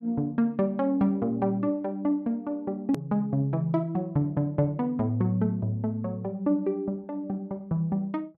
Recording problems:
hard cut with a click; at 3 s

